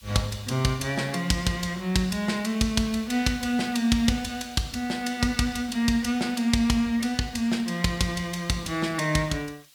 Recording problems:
hiss; slope +4 dB per octave, SNR 26 dB

